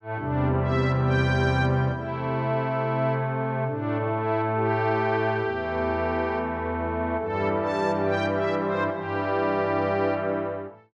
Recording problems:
none

